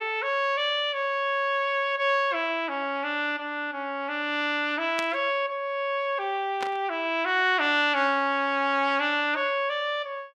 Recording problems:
burst of static; at 5 s and at 6.5 s; peak -4 dB vs average level

